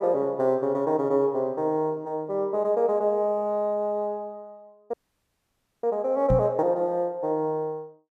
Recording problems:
dropout; at 5 s for 1 s
microphone thump; at 6.5 s; peak +3 dB vs average level

